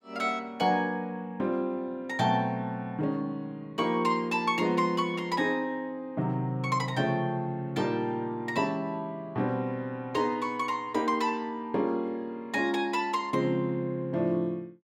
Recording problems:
none

